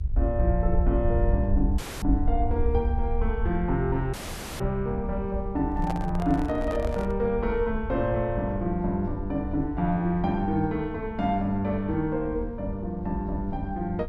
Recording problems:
hum; 50 Hz, harmonics up to 650 Hz, SNR 17 dB
rumble; below 70 Hz, SNR 5 dB
audio cutting out; at 2 s and at 4 s
handling noise; from 5.5 to 7 s; peak -4 dB vs average level

